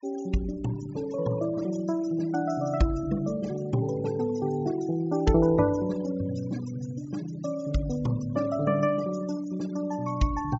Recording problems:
low-pass filter; nothing above 8 kHz
noise reduction artefacts; signal-to-artefact ratio 18 dB

